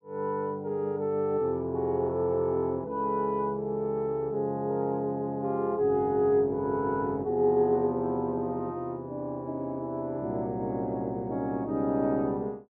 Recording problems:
none

